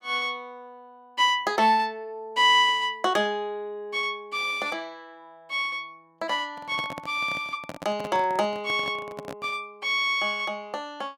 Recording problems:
handling noise; from 6.5 to 9.5 s; peak -7 dB vs average level

